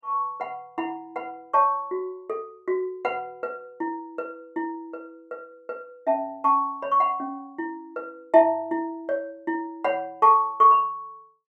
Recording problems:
none

